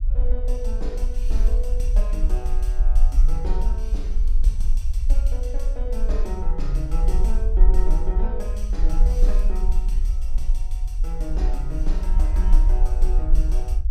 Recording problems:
rumble; below 42 Hz, strongest tone 24 Hz, SNR -11 dB

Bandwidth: 16 kHz